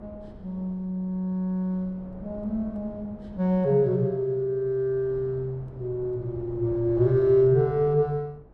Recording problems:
wind noise; below 340 Hz, SNR 20 dB

